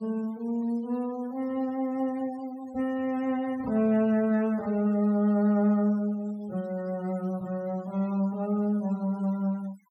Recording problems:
noise reduction artefacts; signal-to-artefact ratio 25 dB

